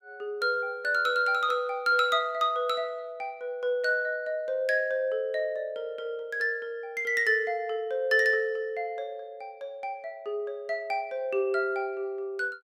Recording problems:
none

